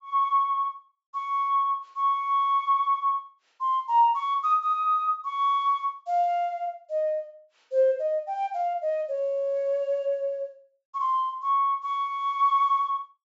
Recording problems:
treble missing; nothing above 8 kHz

